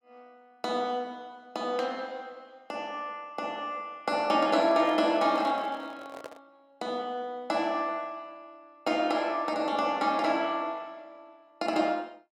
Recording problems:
handling noise; from 4.5 to 6.5 s; peak -8 dB vs average level

